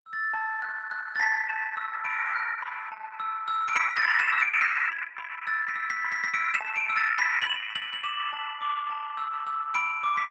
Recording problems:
codec artefacts; Opus, log-spectral distance 5 dB, nothing above 7.3 kHz

